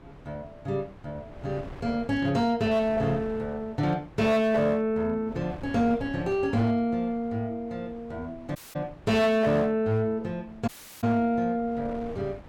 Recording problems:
distorted audio; hard clipping, signal-to-distortion ratio 12 dB
wind on the microphone; below 550 Hz, SNR 20 dB
dropout; at 8.5 s and at 11 s

